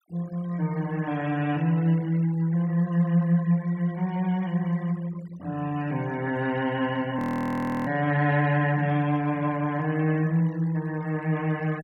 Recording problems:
denoising artefacts; signal-to-artefact ratio 22 dB
audio freezing; at 7 s for 0.5 s

